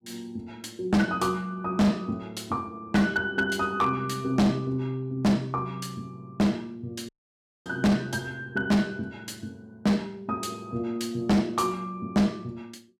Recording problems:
distortion; hard clipping, signal-to-distortion ratio 7 dB
audio cutting out; at 7 s for 0.5 s

